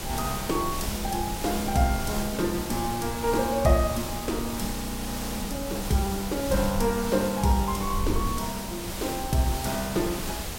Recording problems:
background hiss; slope -3 dB per octave, SNR 7 dB
wind noise; below 96 Hz, SNR 10 dB
audio freezing; at 4.5 s for 0.5 s

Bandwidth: 16 kHz